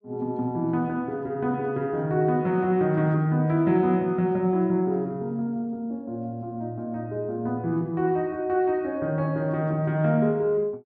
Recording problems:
none

